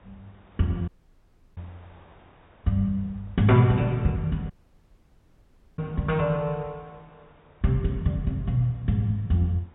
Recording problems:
low-pass filter; nothing above 4 kHz
wind noise; below 1.3 kHz, SNR 30 dB
dropout; at 1 s for 0.5 s and at 4.5 s for 1.5 s

